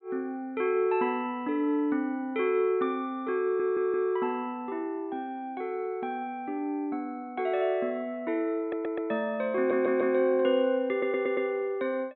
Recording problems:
treble missing; nothing above 4 kHz
stutter; 4 times, first at 3.5 s

